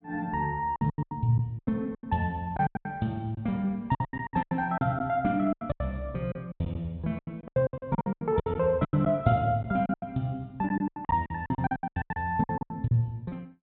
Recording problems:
treble cut off; nothing above 4 kHz
packet loss; 20% of the sound replaced, filled with silence

